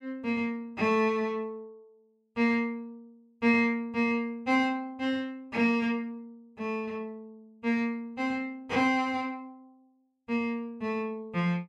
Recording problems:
none

